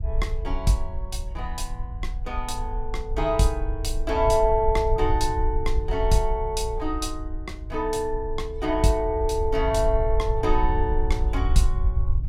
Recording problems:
low-frequency rumble; below 60 Hz, SNR 4 dB

